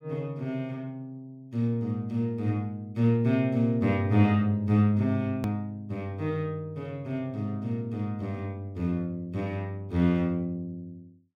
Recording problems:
hard cut with a click; at 5.5 s

